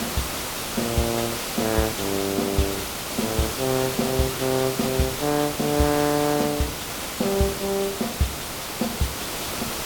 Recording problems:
hiss; slope -3 dB per octave, SNR 3 dB

